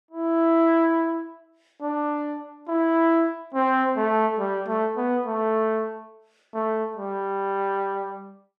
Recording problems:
none

